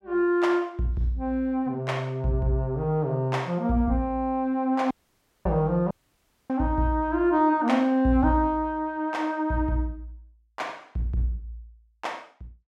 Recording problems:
audio cutting out; at 5 s for 0.5 s and at 6 s for 0.5 s

